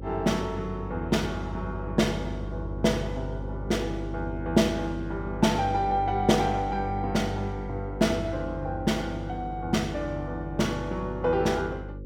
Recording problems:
mains hum; 50 Hz, harmonics up to 550 Hz, SNR 9 dB

